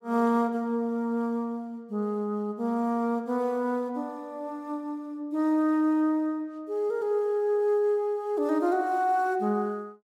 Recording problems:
none

